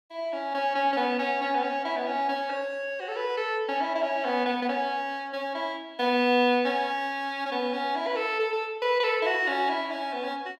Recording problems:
none

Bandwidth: 16 kHz